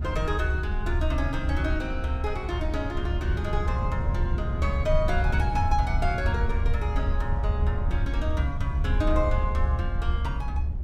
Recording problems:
rumble; below 72 Hz, SNR -2 dB
wind noise; below 120 Hz, SNR 2 dB

